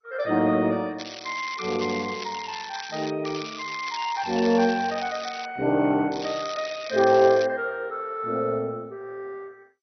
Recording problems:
lossy codec; MP2, log-spectral distance 9 dB, nothing above 5.2 kHz
crackling; from 1 to 3 s, from 3.5 to 5.5 s and from 6 to 7.5 s; loose cable, SNR 13 dB

